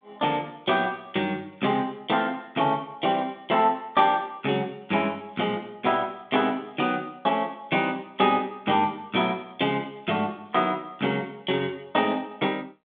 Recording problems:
telephone audio; 170 Hz to 3.7 kHz, G.726

